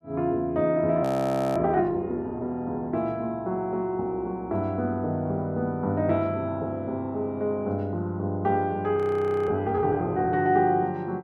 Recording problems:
audio freezing; at 1 s for 0.5 s and at 9 s for 0.5 s

